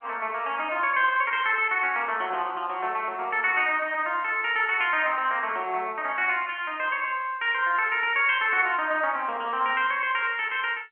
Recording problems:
telephone audio; 260 Hz to 3.2 kHz, G.711

